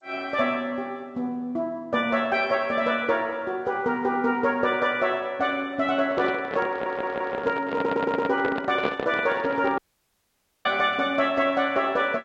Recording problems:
lossy codec; G.722, then Vorbis, log-spectral distance 2 dB, nothing above 8 kHz
handling noise; from 6 to 10 s; peak +2 dB vs average level
stutter; at 6.5 s and at 7.5 s
dropout; at 10 s for 1 s

